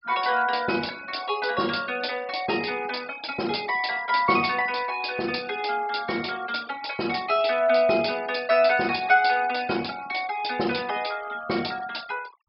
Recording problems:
low-pass filter; nothing above 5.3 kHz
noise reduction artefacts; signal-to-artefact ratio 20 dB

